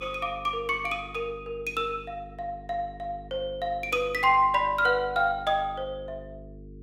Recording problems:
hum; 50 Hz, harmonics up to 450 Hz, SNR 19 dB

